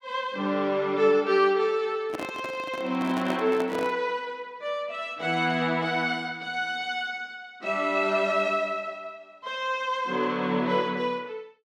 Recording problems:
microphone handling noise; from 2 to 4 s; peak -2 dB vs average level

